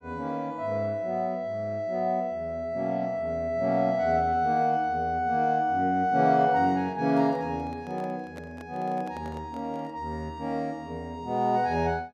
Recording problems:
microphone handling noise; from 7 to 10 s; peak -11 dB vs average level

